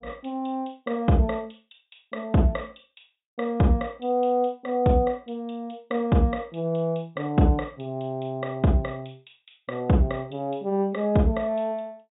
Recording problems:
treble missing; nothing above 4 kHz

